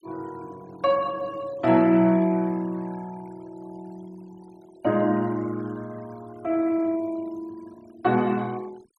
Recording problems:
noise reduction artefacts; signal-to-artefact ratio 25 dB

